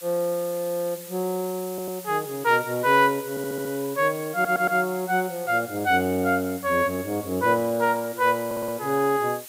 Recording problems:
hiss; SNR 15 dB
audio stuttering; 4 times, first at 1.5 s

